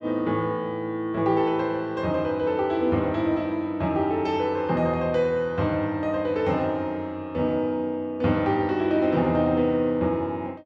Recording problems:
none

